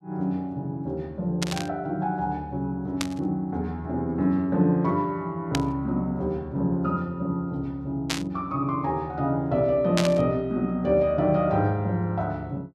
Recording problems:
burst of static; 5 times, first at 1.5 s; peak +4 dB vs average level

